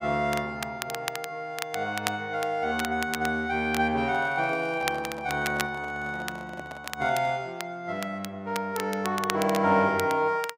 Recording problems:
crackling; vinyl, SNR 10 dB
microphone handling noise; from 4 to 7.5 s; peak -8 dB vs average level

